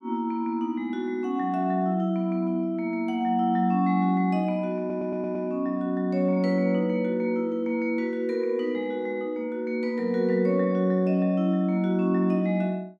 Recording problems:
stutter; at 5 s

